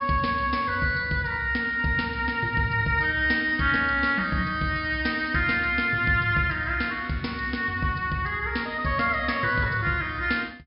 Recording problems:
treble cut off; nothing above 5.5 kHz

